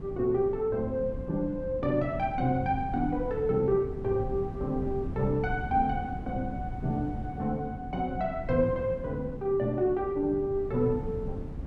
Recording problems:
wind on the microphone; below 200 Hz, SNR 10 dB

